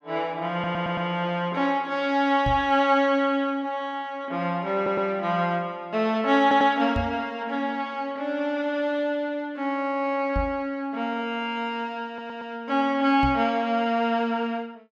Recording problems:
stutter; 4 times, first at 0.5 s
microphone thump; 4 times, first at 2.5 s; peak 0 dB vs average level

